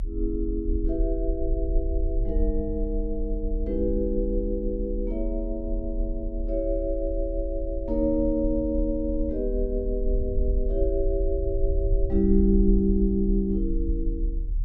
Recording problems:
low-frequency rumble; below 46 Hz, strongest tone 36 Hz, SNR 3 dB

